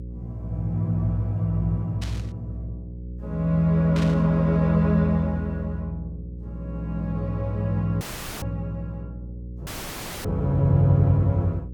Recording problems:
electrical hum; 60 Hz, harmonics up to 540 Hz, SNR 12 dB
static burst; at 2 s, at 4 s and at 8.5 s; peak -8 dB vs average level
audio cutting out; at 8 s and at 9.5 s for 0.5 s

